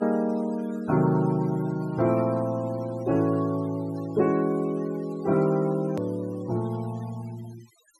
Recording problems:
denoising artefacts; signal-to-artefact ratio 21 dB
click at an edit; at 6 s

